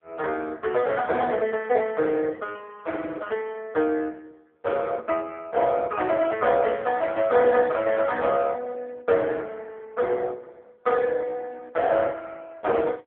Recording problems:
phone line; 280 Hz to 3 kHz, AMR-NB

